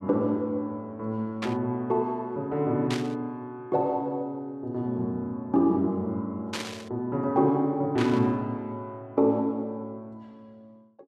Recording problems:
static burst; 4 times, first at 1.5 s; peak -1 dB vs average level

